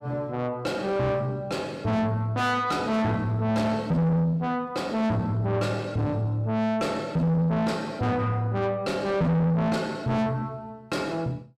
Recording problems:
distorted audio; soft clipping, signal-to-distortion ratio 7 dB

